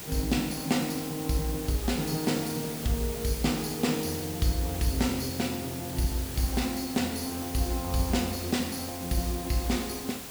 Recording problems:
hiss; slope -3 dB per octave, SNR 8 dB

